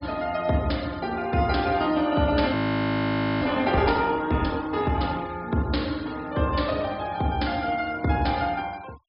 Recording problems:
low-pass filter; nothing above 5.5 kHz
denoising artefacts; signal-to-artefact ratio 22 dB
audio freezing; at 2.5 s for 1 s

